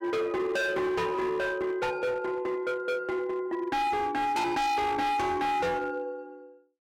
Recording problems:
distorted audio; hard clipping, signal-to-distortion ratio 6 dB

